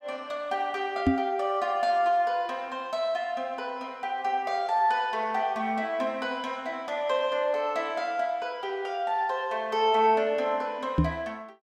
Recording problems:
knock on the microphone; at 1 s and at 11 s; peak +8 dB vs average level

